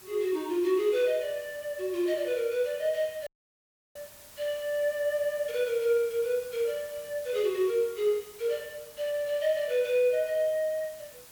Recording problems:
hiss; slope -1 dB per octave, SNR 19 dB
audio cutting out; at 3.5 s for 0.5 s

